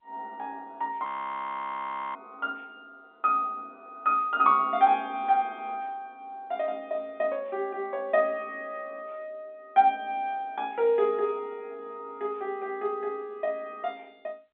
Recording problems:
phone line; 240 Hz to 4 kHz, G.711
audio freezing; at 1 s for 1 s

